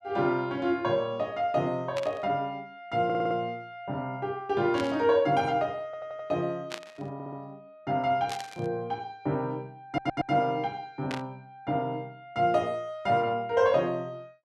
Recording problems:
static burst; 5 times, first at 2 s; peak -3 dB vs average level
stutter; 4 times, first at 3 s

